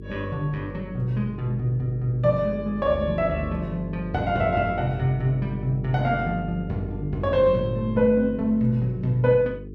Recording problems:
mains hum; 50 Hz, harmonics up to 450 Hz, SNR 11 dB

